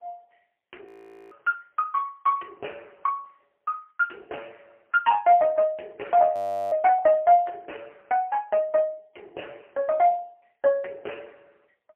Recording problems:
phone line; 340 Hz to 3.1 kHz, AMR-NB, then MP3
audio freezing; at 1 s and at 6.5 s

